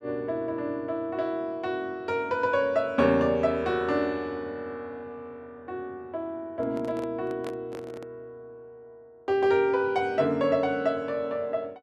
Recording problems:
microphone handling noise; from 6.5 to 8 s; peak -8 dB vs average level

